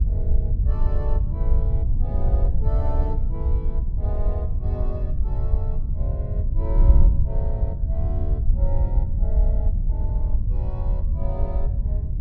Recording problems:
wind noise; below 70 Hz, SNR -14 dB

